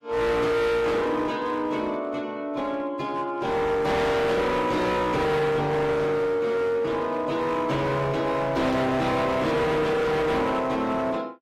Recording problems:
codec artefacts; AAC, log-spectral distance 2 dB
distortion; hard clipping, signal-to-distortion ratio 7 dB

